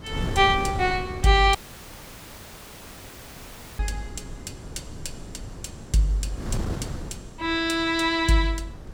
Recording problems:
wind on the microphone; below 260 Hz, SNR 12 dB
dropout; at 1.5 s for 2 s

